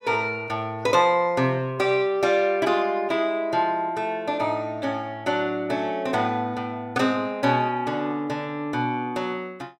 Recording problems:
none

